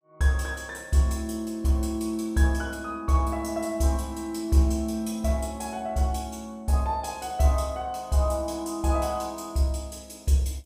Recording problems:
none

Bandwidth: 15.5 kHz